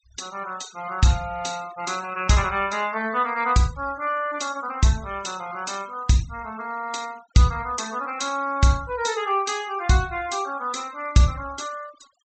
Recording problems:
treble cut off; nothing above 8 kHz
denoising artefacts; signal-to-artefact ratio 20 dB

